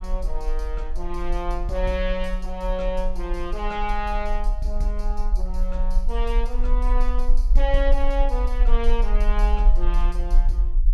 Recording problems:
rumble; below 40 Hz, strongest tone 20 Hz, SNR -4 dB

